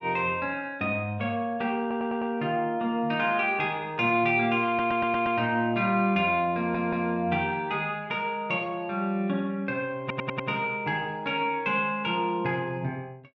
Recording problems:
stutter; 4 times, first at 2 s

